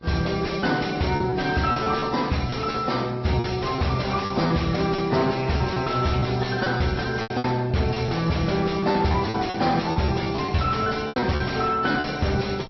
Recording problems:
treble missing; nothing above 5.7 kHz
lossy compression; AAC, then AAC, log-spectral distance 6 dB
distorted audio; soft clipping, signal-to-distortion ratio 5 dB
mains hum; 60 Hz, harmonics up to 1.1 kHz, SNR 24 dB
packet loss; 9% of the sound replaced, filled with repeated pitch periods

